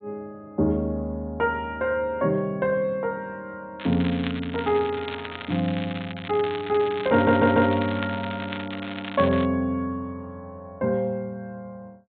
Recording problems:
treble missing; nothing above 4 kHz
crackle; from 4 to 9.5 s; loose cable, SNR 12 dB
audio stuttering; at 7 s

